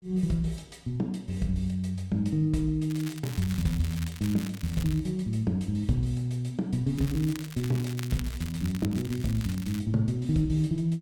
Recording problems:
crackle; from 3 to 5 s and from 7 to 10 s; loose cable, SNR 15 dB

